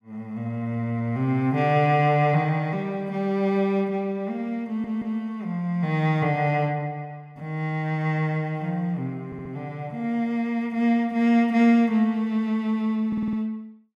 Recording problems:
audio stuttering; at 4.5 s, at 9.5 s and at 13 s

